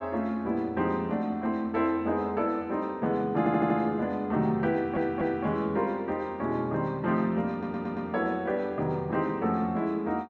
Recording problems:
audio stuttering; at 3.5 s, at 4.5 s and at 7.5 s

